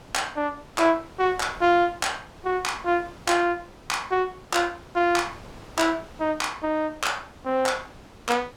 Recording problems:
wind noise; below 1.2 kHz, SNR 21 dB

